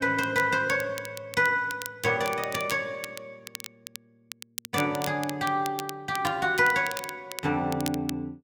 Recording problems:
crackling; vinyl, SNR 13 dB

